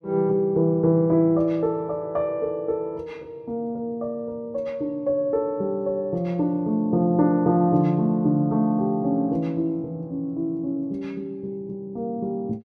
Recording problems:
none

